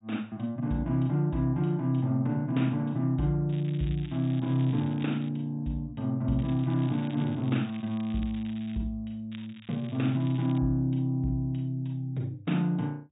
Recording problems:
treble cut off; nothing above 4 kHz
crackling; from 3.5 to 5.5 s, from 6.5 to 9 s and from 9.5 to 11 s; loose cable, SNR 22 dB

